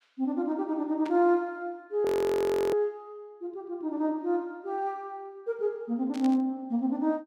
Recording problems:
static burst; at 1 s and at 6 s; peak -10 dB vs average level
frozen audio; at 2 s for 0.5 s

